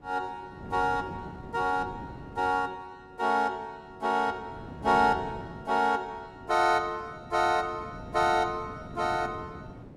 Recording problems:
wind noise; below 380 Hz, SNR 16 dB

